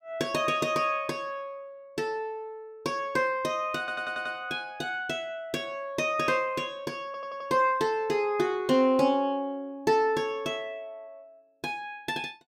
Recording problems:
stutter; at 4 s and at 7 s

